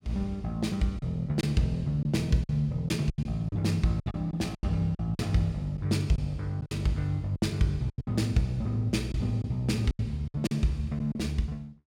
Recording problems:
packet loss; 9% of the sound replaced, filled with silence

